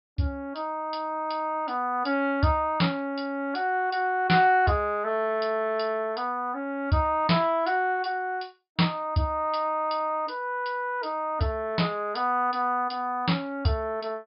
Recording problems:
low-pass filter; nothing above 5.1 kHz

